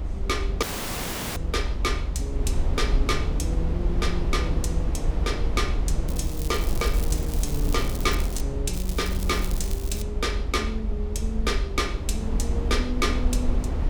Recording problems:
rumble; below 72 Hz, SNR -2 dB
dropout; at 0.5 s for 0.5 s
crackling; from 6 to 8.5 s and from 8.5 to 10 s; loose cable, SNR 9 dB

